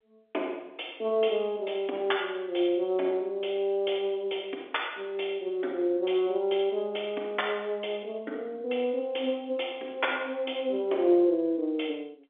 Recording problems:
phone line; 240 Hz to 3.6 kHz, G.711

